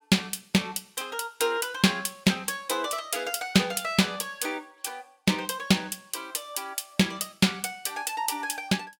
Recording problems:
none

